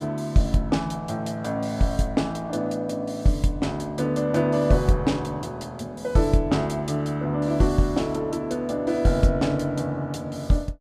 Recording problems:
none

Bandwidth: 15 kHz